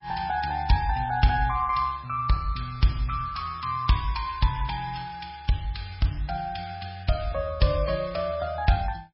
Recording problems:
lossy codec; MP3, log-spectral distance 4 dB, nothing above 5.3 kHz

